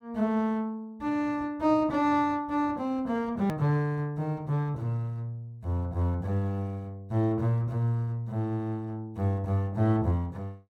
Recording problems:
hard cut with a click; at 3.5 s

